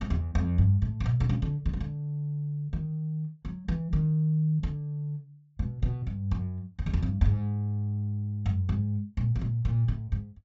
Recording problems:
treble cut off; nothing above 8 kHz

